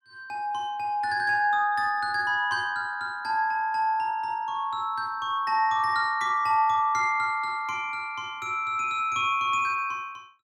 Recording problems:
none

